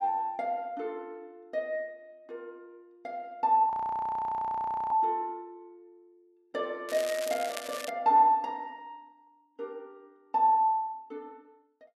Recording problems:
frozen audio; at 3.5 s for 1 s
crackling; from 7 to 8 s; loose cable, SNR 12 dB

